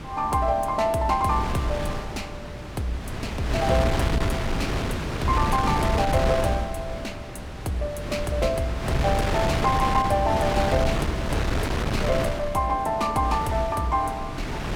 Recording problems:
wind on the microphone; below 800 Hz, SNR 3 dB

